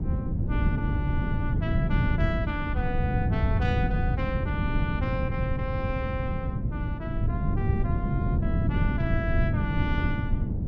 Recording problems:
wind on the microphone; below 160 Hz, SNR -6 dB

